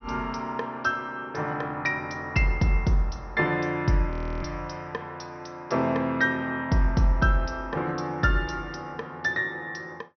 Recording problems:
treble cut off; nothing above 6 kHz
frozen audio; at 4 s

